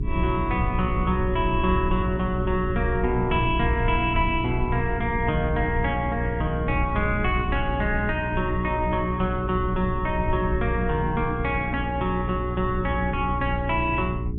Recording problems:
low-pass filter; nothing above 4 kHz
electrical hum; 60 Hz, harmonics up to 420 Hz, SNR 5 dB
low-frequency rumble; below 92 Hz, SNR 7 dB

